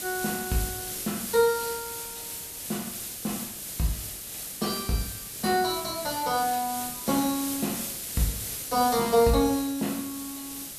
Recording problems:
background hiss; SNR 5 dB

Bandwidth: 14 kHz